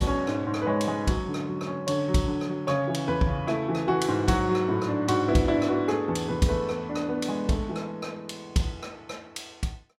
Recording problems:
none

